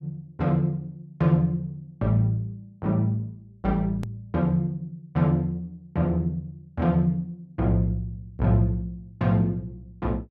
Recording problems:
click at an edit; at 4 s

